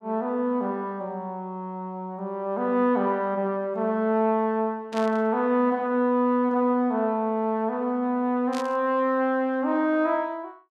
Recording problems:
static burst; at 5 s and at 8.5 s; peak -8 dB vs average level

